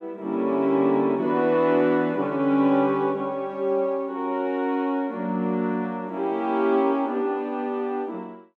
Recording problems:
none

